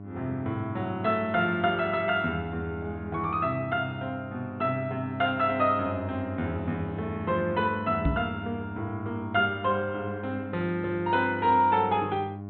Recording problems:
low-pass filter; nothing above 4 kHz
mains hum; 50 Hz, harmonics up to 1.1 kHz, SNR 11 dB
microphone bump; at 8 s; peak +5 dB vs average level

